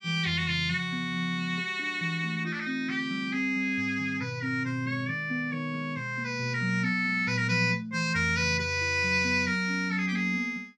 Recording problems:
none

